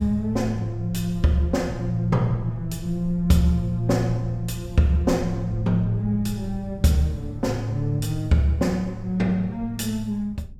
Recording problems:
low-frequency rumble; below 94 Hz, SNR 16 dB

